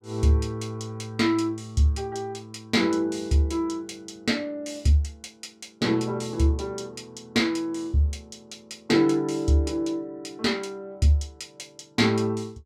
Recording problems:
none

